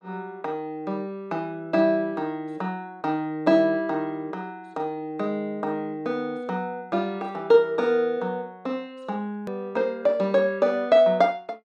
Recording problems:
hard cut with a click; at 9.5 s

